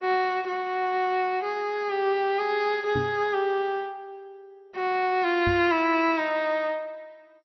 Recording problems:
lossy codec; MP2, log-spectral distance 2 dB, nothing above 5.7 kHz
microphone bump; at 3 s and at 5.5 s; peak -2 dB vs average level

